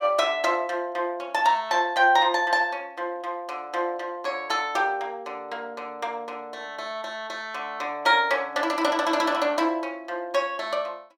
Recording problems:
none

